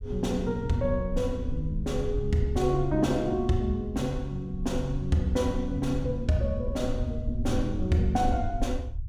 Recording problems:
low-frequency rumble; below 76 Hz, SNR 7 dB

